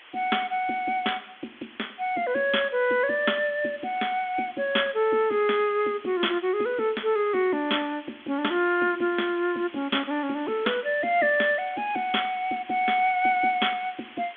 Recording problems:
telephone audio; 220 Hz to 3.5 kHz, G.726
background hiss; SNR 21 dB

